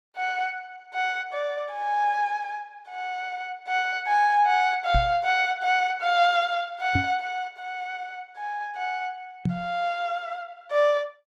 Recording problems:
lossy codec; Opus, log-spectral distance 2 dB
microphone thump; at 5 s, at 7 s and at 9.5 s; peak +3 dB vs average level

